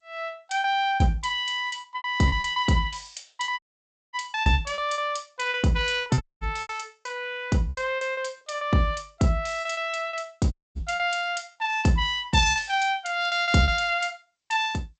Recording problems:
codec artefacts; G.722, log-spectral distance 4 dB, nothing above 8 kHz
lost packets; 11% of the sound replaced, filled with repeated pitch periods
dropout; at 3.5 s for 0.5 s, at 6 s and at 11 s

